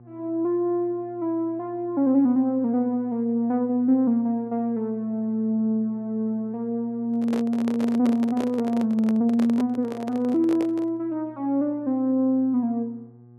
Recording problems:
hum; 60 Hz, harmonics up to 840 Hz, SNR 25 dB
microphone handling noise; from 7 to 11 s; peak -4 dB vs average level

